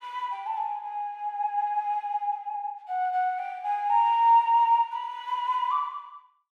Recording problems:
none

